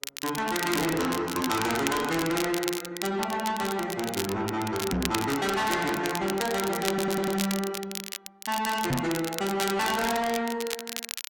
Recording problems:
lossy codec; Opus, log-spectral distance 2 dB, nothing above 16.6 kHz
distorted audio; soft clipping, signal-to-distortion ratio 8 dB
crackling; vinyl, SNR 7 dB
knock on the microphone; at 5 s and at 9 s; peak +4 dB vs average level
audio stuttering; at 7 s

